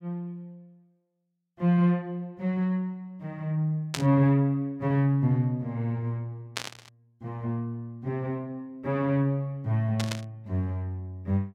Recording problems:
burst of static; at 4 s, at 6.5 s and at 10 s; peak +2 dB vs average level

